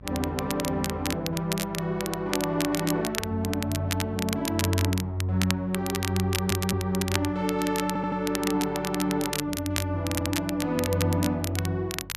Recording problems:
hum; 50 Hz, harmonics up to 550 Hz, SNR 19 dB
crackle; vinyl, SNR 6 dB
audio stuttering; at 6.5 s, at 8 s and at 10 s

